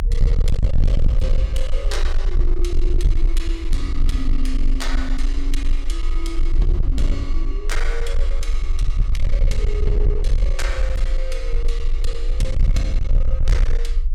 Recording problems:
distorted audio; hard clipping, uneven, signal-to-distortion ratio 7 dB
low-frequency rumble; below 42 Hz, strongest tone 24 Hz, SNR -8 dB

